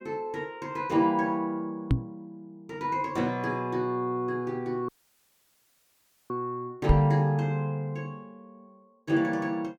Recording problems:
microphone bump; at 2 s and at 7 s; peak +9 dB vs average level
dropout; at 5 s for 1.5 s

